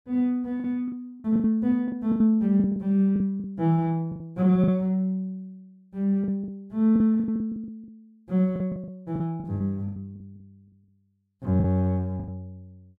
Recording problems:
packet loss; 13% of the sound replaced, filled with the last packet

